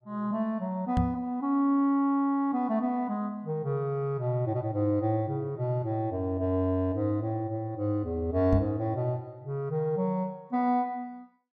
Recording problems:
knock on the microphone; at 1 s and at 8.5 s; peak +4 dB vs average level

